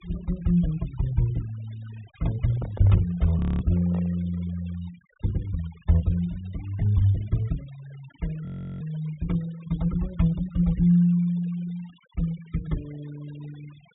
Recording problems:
low-pass filter; nothing above 4 kHz
noise reduction artefacts; signal-to-artefact ratio 25 dB
handling noise; from 2.5 to 4 s; peak -11 dB vs average level
frozen audio; at 3.5 s and at 8.5 s

